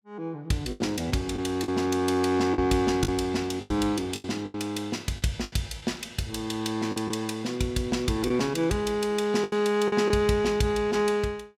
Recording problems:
packet loss; 7% of the sound replaced, filled with the last packet

